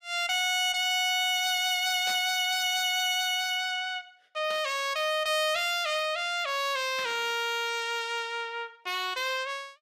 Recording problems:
distortion; hard clipping, signal-to-distortion ratio 10 dB
burst of static; at 2 s, at 4.5 s and at 7 s; peak -10 dB vs average level

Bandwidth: 15 kHz